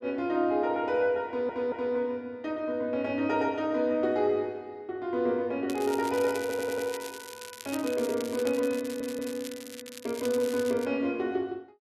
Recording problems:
audio stuttering; at 1.5 s, at 6.5 s and at 9 s
crackling; from 5.5 to 11 s; loose cable, SNR 14 dB

